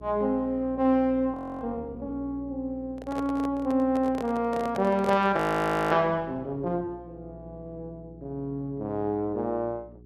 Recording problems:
hum; 60 Hz, harmonics up to 420 Hz, SNR 20 dB
audio freezing; at 1.5 s and at 5.5 s for 0.5 s
microphone handling noise; from 3 to 6 s; peak -2 dB vs average level

